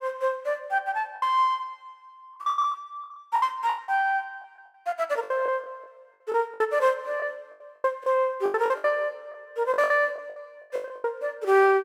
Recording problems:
packet loss; 15% of the sound replaced, filled with the last packet

